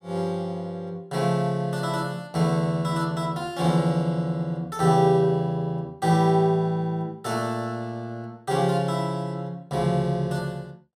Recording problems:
none

